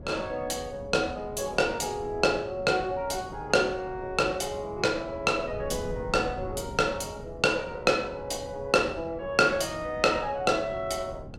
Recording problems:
wind on the microphone; below 270 Hz, SNR 16 dB

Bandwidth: 16 kHz